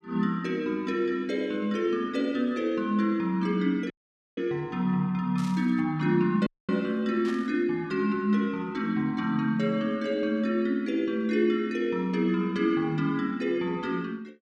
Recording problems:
audio cutting out; at 4 s and at 6.5 s
burst of static; at 5.5 s and at 7 s; peak -12 dB vs average level

